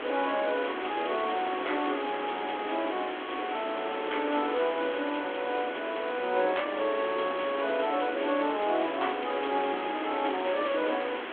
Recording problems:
telephone audio; 240 Hz to 3.4 kHz, G.726
hiss; SNR 6 dB

